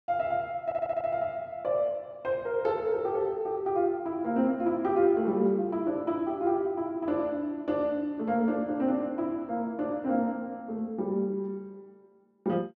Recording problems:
stutter; at 0.5 s

